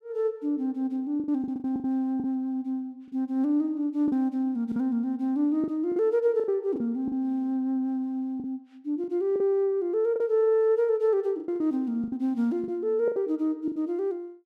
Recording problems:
lost packets; 9% of the sound replaced, filled with the last packet

